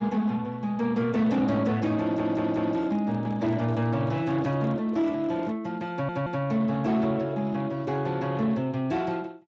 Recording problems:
lossy compression; Speex, log-spectral distance 3 dB
distorted audio; soft clipping, signal-to-distortion ratio 11 dB
stutter; at 2 s and at 6 s
microphone handling noise; from 2 to 5.5 s; peak -9 dB vs average level

